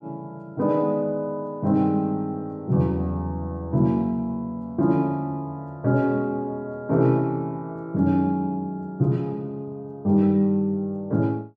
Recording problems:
none

